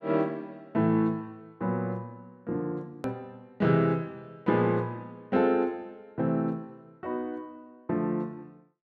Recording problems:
edit click; at 3 s

